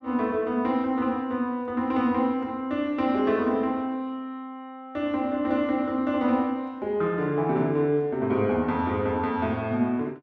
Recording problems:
none

